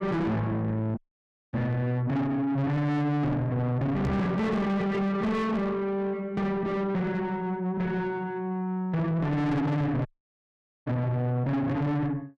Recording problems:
distortion; soft clipping, signal-to-distortion ratio 6 dB
dropout; at 1 s for 0.5 s and at 10 s for 1 s
knock on the microphone; at 4 s; peak +5 dB vs average level

